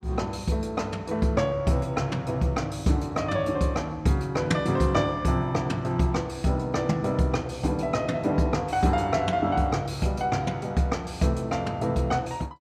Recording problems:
none

